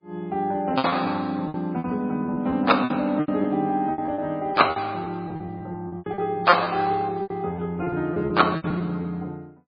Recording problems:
lossy compression; MP3, log-spectral distance 2 dB, nothing above 4.4 kHz
packet loss; 15% of the sound replaced, filled with repeated pitch periods

